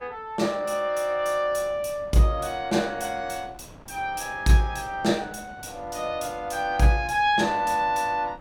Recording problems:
wind noise; below 780 Hz, SNR 23 dB

